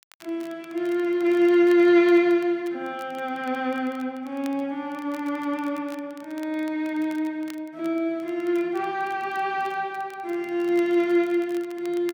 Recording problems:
crackling; vinyl, SNR 27 dB

